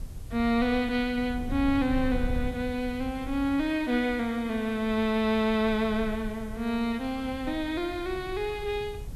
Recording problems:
hiss; slope 0 dB per octave, SNR 27 dB
wind on the microphone; below 92 Hz, SNR 13 dB

